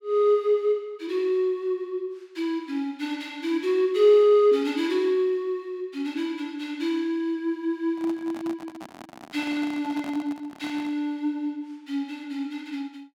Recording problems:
microphone handling noise; from 8 to 11 s; peak -10 dB vs average level

